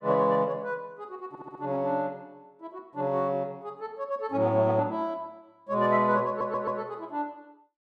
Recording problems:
audio stuttering; at 1.5 s and at 6.5 s

